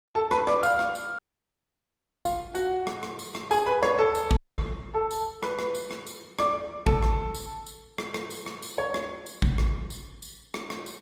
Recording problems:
lossy compression; Opus, log-spectral distance 4 dB
audio cutting out; at 1 s for 1 s and at 4.5 s

